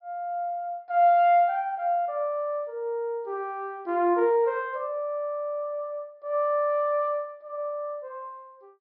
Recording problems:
treble cut off; nothing above 5.5 kHz

